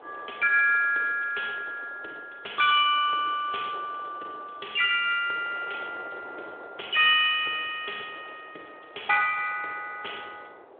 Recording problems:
telephone audio; 300 Hz to 3.5 kHz, Speex
wind on the microphone; below 920 Hz, SNR 22 dB

